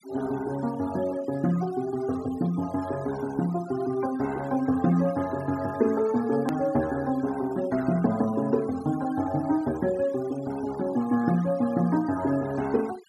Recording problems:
denoising artefacts; signal-to-artefact ratio 19 dB
edit click; at 6.5 s

